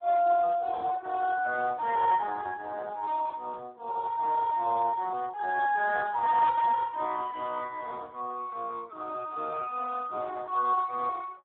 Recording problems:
phone line; 280 Hz to 2 kHz, Speex
static burst; at 6.5 s; peak -10 dB vs average level

